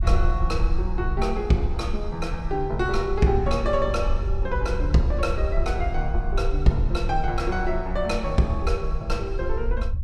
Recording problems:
low-frequency rumble; below 58 Hz, SNR 3 dB

